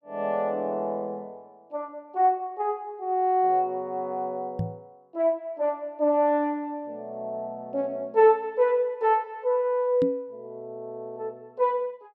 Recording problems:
microphone thump; at 4.5 s and at 10 s; peak +1 dB vs average level

